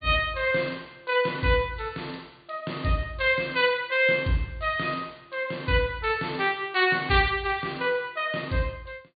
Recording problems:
low-pass filter; nothing above 4.6 kHz

